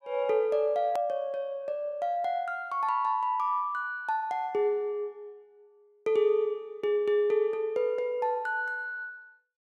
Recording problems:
hard cut with a click; at 1 s

